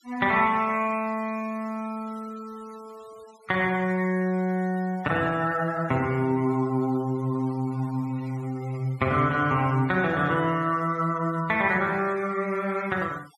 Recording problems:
denoising artefacts; signal-to-artefact ratio 25 dB

